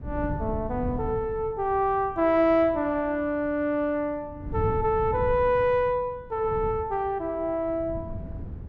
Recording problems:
wind on the microphone; below 160 Hz, SNR 12 dB

